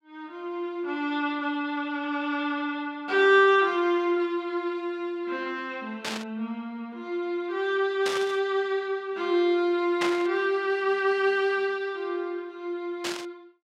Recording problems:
burst of static; 4 times, first at 6 s; peak +1 dB vs average level

